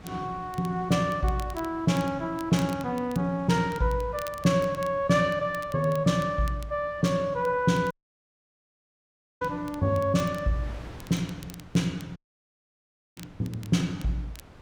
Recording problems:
wind on the microphone; below 920 Hz, SNR 22 dB
crackle; vinyl, SNR 22 dB
audio cutting out; at 8 s for 1.5 s and at 12 s for 1 s

